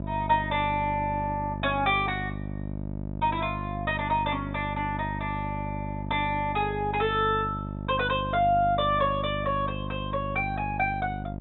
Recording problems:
treble cut off; nothing above 3.9 kHz
mains hum; 50 Hz, harmonics up to 950 Hz, SNR 7 dB

